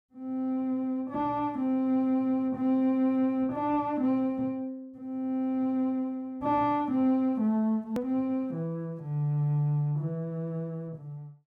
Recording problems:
click at an edit; at 8 s

